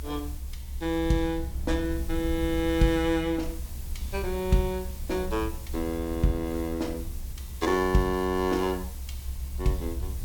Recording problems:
background hiss; SNR 18 dB
rumble; below 68 Hz, SNR 8 dB

